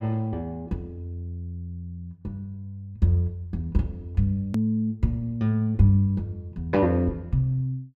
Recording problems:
click at an edit; at 4.5 s

